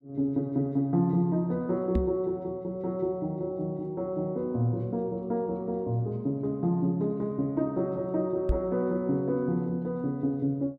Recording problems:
microphone thump; at 2 s and at 8.5 s; peak +5 dB vs average level

